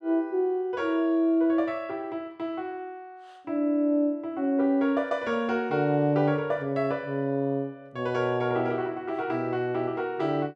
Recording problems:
none

